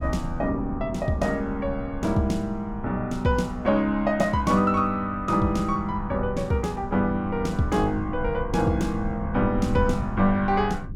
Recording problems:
rumble; below 110 Hz, SNR 12 dB

